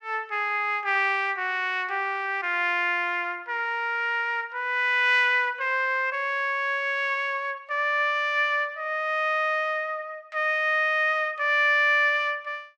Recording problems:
none

